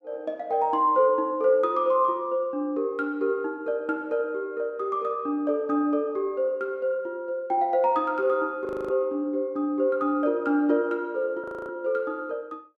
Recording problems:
frozen audio; at 8.5 s and at 11 s

